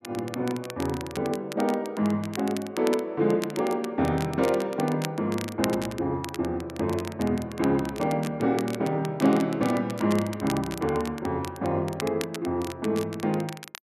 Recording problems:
crackling; vinyl, SNR 14 dB

